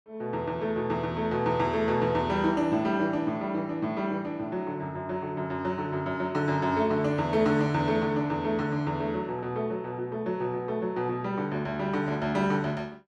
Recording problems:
none

